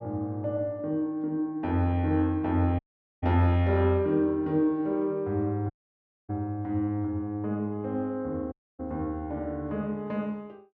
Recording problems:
dropout; at 3 s, at 5.5 s for 0.5 s and at 8.5 s

